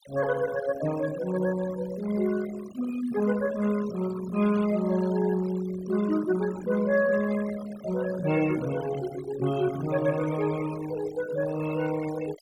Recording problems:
noise reduction artefacts; signal-to-artefact ratio 14 dB

